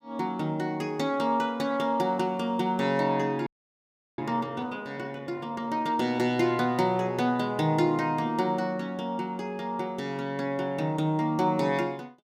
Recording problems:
frozen audio; at 3.5 s for 0.5 s

